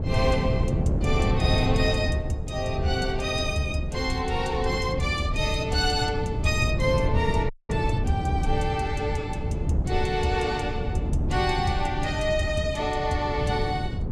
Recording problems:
wind noise; below 160 Hz, SNR 2 dB
dropout; at 7.5 s

